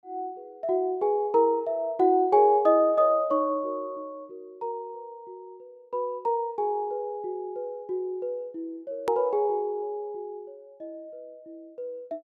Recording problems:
edit click; at 9 s

